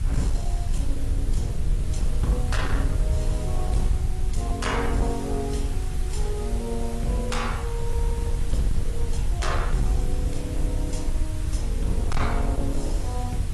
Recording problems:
lossy codec; AAC, log-spectral distance 3 dB, nothing above 11 kHz
distorted audio; hard clipping, signal-to-distortion ratio 12 dB
hum; 50 Hz, harmonics up to 450 Hz, SNR 11 dB
background hiss; slope -2 dB per octave, SNR 11 dB
rumble; below 70 Hz, SNR -3 dB

